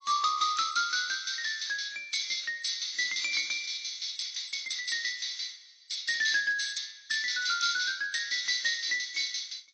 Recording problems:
lossy compression; AAC, log-spectral distance 10 dB

